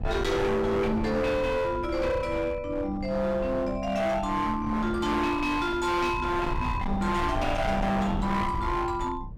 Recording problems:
distorted audio; hard clipping, signal-to-distortion ratio 7 dB
rumble; below 260 Hz, SNR 8 dB

